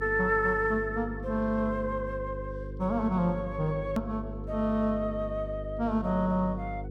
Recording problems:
electrical hum; 50 Hz, harmonics up to 500 Hz, SNR 10 dB
hard cut with a click; at 4 s

